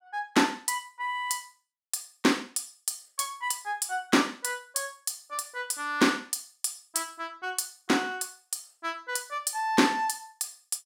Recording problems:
none

